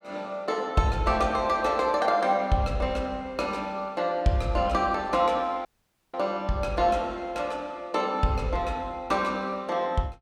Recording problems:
dropout; at 5.5 s

